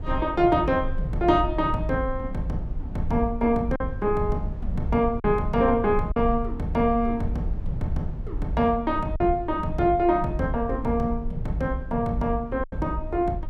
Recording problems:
low-frequency rumble; below 66 Hz, SNR 10 dB
lost packets; 1.8% of the sound replaced, filled with silence

